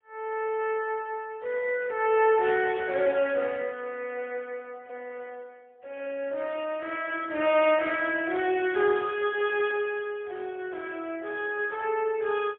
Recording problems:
phone line; 320 Hz to 3.4 kHz, AMR-NB, then MP3

